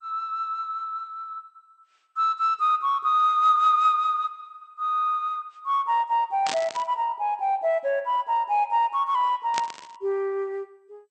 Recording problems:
codec artefacts; MP2, log-spectral distance 2 dB
burst of static; at 6.5 s and at 9.5 s; peak -2 dB vs average level

